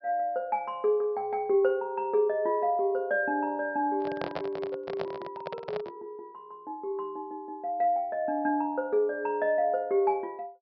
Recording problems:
treble missing; nothing above 5.5 kHz
microphone handling noise; from 4 to 6 s; peak -1 dB vs average level

